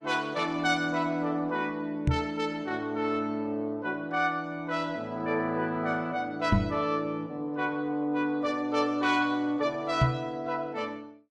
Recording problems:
lossy codec; Opus, log-spectral distance 2 dB
microphone bump; at 2 s, at 6.5 s and at 10 s; peak +8 dB vs average level

